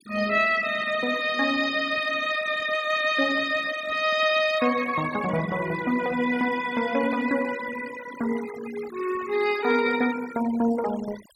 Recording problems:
denoising artefacts; signal-to-artefact ratio 15 dB

